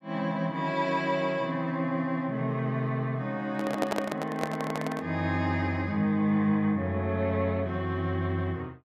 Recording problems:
microphone handling noise; from 3.5 to 5 s; peak +2 dB vs average level

